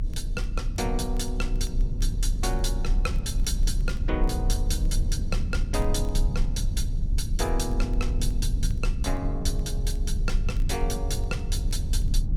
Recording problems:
low-frequency rumble; below 62 Hz, strongest tone 34 Hz, SNR -4 dB
wind noise; below 170 Hz, SNR 12 dB
crackling; vinyl, SNR 28 dB

